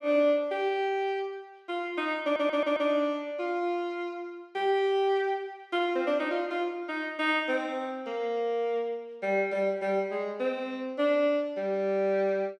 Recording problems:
stutter; at 2 s

